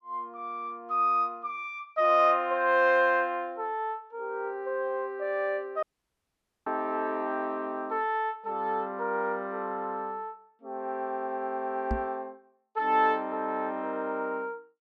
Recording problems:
audio cutting out; at 6 s for 1 s
knock on the microphone; at 12 s; peak +1 dB vs average level

